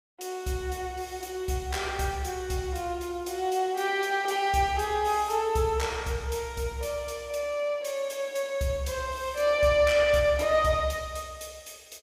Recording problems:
none

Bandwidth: 15.5 kHz